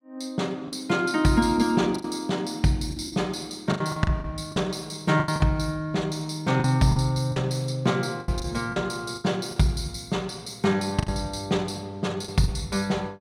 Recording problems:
lost packets; 9% of the sound replaced, filled with the last packet

